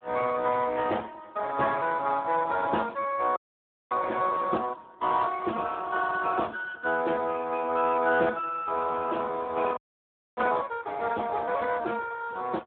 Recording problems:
phone line; 260 Hz to 2 kHz, Speex
frozen audio; at 3.5 s for 0.5 s and at 10 s for 0.5 s

